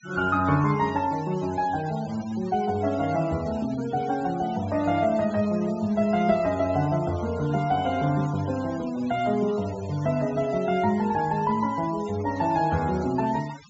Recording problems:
treble missing; nothing above 8 kHz
noise reduction artefacts; signal-to-artefact ratio 19 dB

